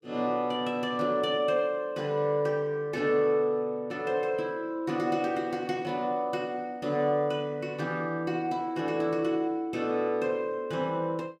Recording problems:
none

